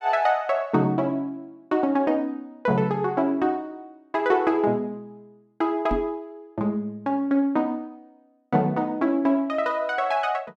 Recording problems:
microphone thump; at 6 s; peak +1 dB vs average level

